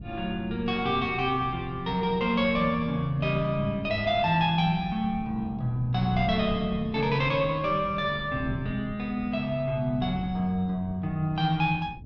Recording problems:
wind noise; below 190 Hz, SNR 14 dB

